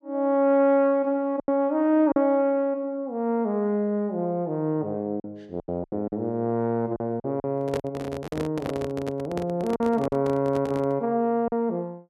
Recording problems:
lost packets; 6% of the sound replaced, filled with silence
handling noise; from 7.5 to 11 s; peak -2 dB vs average level

